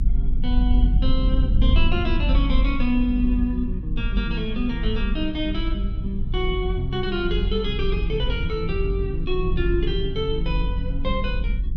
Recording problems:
rumble; below 54 Hz, strongest tone 22 Hz, SNR 0 dB

